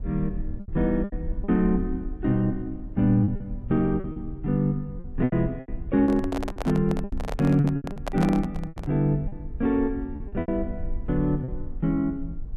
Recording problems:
rumble; below 64 Hz, SNR 11 dB
lost packets; 10% of the sound replaced, filled with repeated pitch periods
handling noise; from 6 to 9 s; peak 0 dB vs average level

